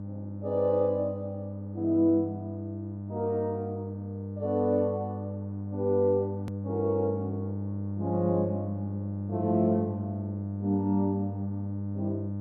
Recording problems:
hum; 50 Hz, harmonics up to 600 Hz, SNR 6 dB
hard cut with a click; at 6.5 s

